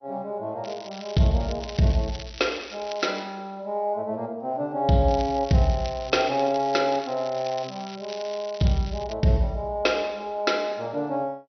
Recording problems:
codec artefacts; MP2, log-spectral distance 6 dB, nothing above 6 kHz
crackling; from 0.5 to 3 s, from 5 to 6.5 s and from 6.5 to 9 s; loose cable, SNR 16 dB

